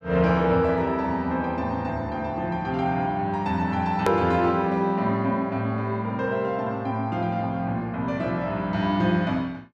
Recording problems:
hard cut with a click; at 4 s

